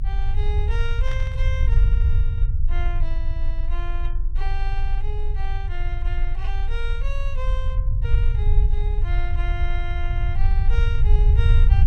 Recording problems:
rumble; below 54 Hz, strongest tone 20 Hz, SNR -12 dB
static burst; at 1 s; peak 0 dB vs average level

